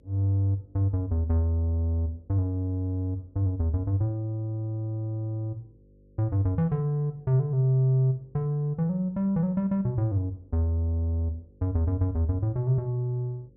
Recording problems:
mains hum; 50 Hz, harmonics up to 550 Hz, SNR 31 dB

